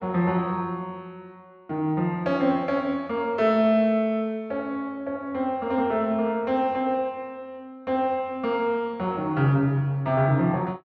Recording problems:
none

